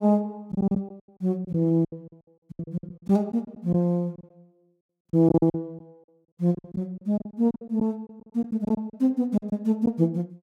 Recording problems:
packet loss; 15% of the sound replaced, filled with silence

